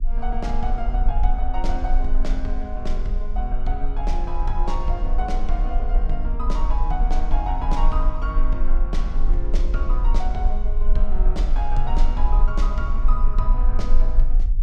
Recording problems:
low-frequency rumble; below 36 Hz, strongest tone 20 Hz, SNR -6 dB

